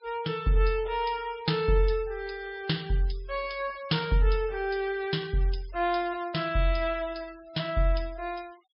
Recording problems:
treble missing; nothing above 5.3 kHz
denoising artefacts; signal-to-artefact ratio 23 dB

